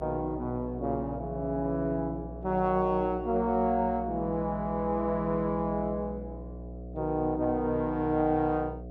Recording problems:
hum; 60 Hz, harmonics up to 720 Hz, SNR 12 dB

